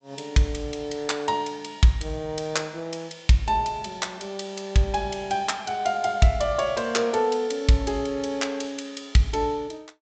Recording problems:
low-pass filter; nothing above 8 kHz

